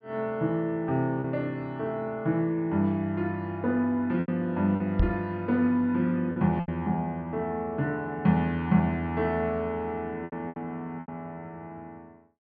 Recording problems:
treble missing; nothing above 5.5 kHz
lost packets; 4% of the sound replaced, filled with repeated pitch periods
microphone bump; at 5 s; peak +6 dB vs average level

